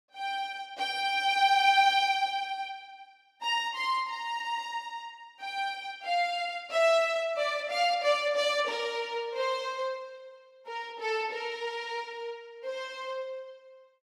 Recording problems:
none

